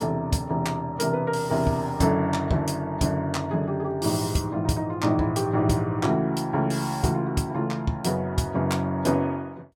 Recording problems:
none

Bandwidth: 17 kHz